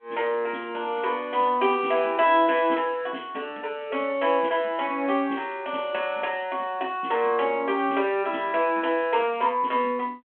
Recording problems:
telephone audio; 190 Hz to 3.4 kHz, G.726

